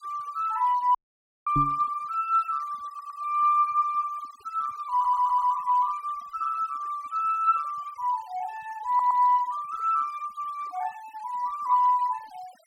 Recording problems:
denoising artefacts; signal-to-artefact ratio 27 dB
dropout; at 1 s for 0.5 s
microphone bump; at 1.5 s; peak +1 dB vs average level
audio stuttering; at 3 s, at 5 s and at 9 s

